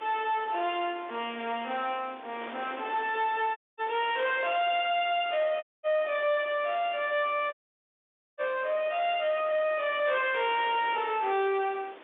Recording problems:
phone line; 260 Hz to 3.6 kHz, G.711
distortion; soft clipping, signal-to-distortion ratio 10 dB
wind on the microphone; below 2.3 kHz, SNR 19 dB
audio cutting out; at 3.5 s, at 5.5 s and at 7.5 s for 1 s

